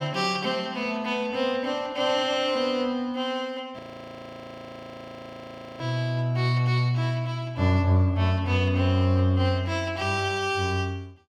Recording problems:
audio freezing; at 4 s for 2 s

